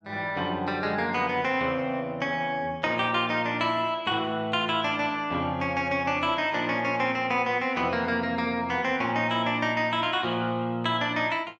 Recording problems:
none

